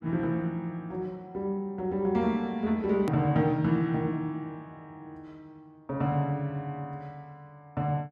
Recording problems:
click at an edit; at 3 s

